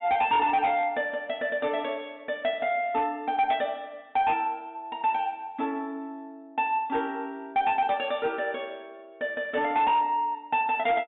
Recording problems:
low-pass filter; nothing above 3.7 kHz
distortion; hard clipping, signal-to-distortion ratio 11 dB

